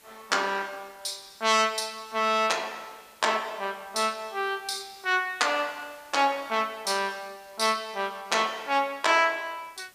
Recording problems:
hiss; slope -1 dB per octave, SNR 27 dB

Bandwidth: 15 kHz